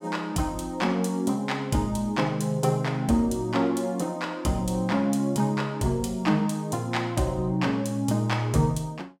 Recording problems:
none

